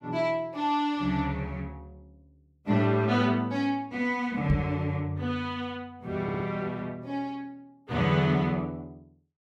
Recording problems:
microphone bump; at 4.5 s; peak +5 dB vs average level
audio stuttering; at 6 s

